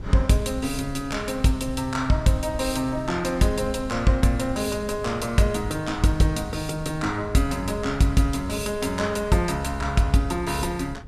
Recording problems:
wind noise; below 110 Hz, SNR 15 dB

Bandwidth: 14 kHz